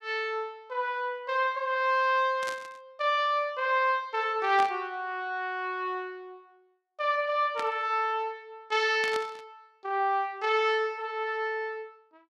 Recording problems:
static burst; 4 times, first at 2.5 s; peak -4 dB vs average level

